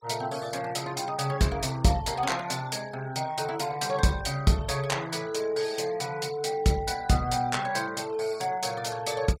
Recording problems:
noise reduction artefacts; signal-to-artefact ratio 20 dB

